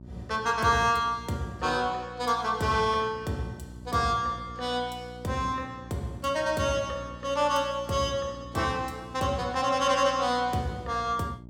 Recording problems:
hum; 60 Hz, harmonics up to 660 Hz, SNR 18 dB

